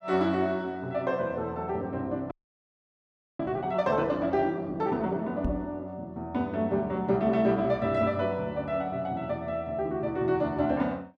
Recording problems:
frozen audio; at 2.5 s for 1 s
knock on the microphone; at 5.5 s; peak +1 dB vs average level

